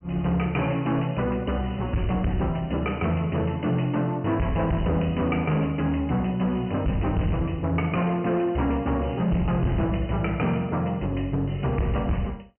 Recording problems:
treble missing; nothing above 3 kHz
distortion; hard clipping, signal-to-distortion ratio 7 dB

